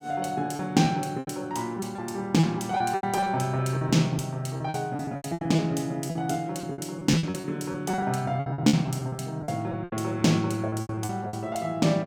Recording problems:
lost packets; 15% of the sound replaced, filled with repeated pitch periods

